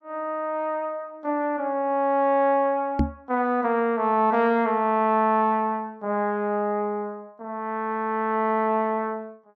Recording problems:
microphone bump; at 3 s; peak +6 dB vs average level

